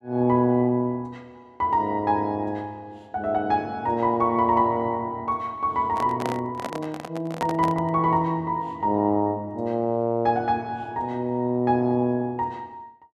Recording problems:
microphone handling noise; from 6 to 8 s; peak -1 dB vs average level

